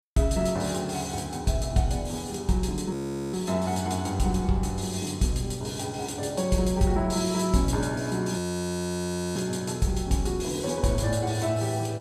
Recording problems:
frozen audio; at 3 s and at 8.5 s for 1 s

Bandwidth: 15 kHz